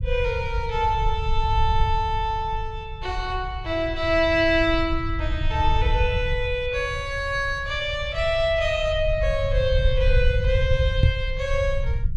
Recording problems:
rumble; below 80 Hz, SNR 4 dB
microphone bump; at 11 s; peak +9 dB vs average level

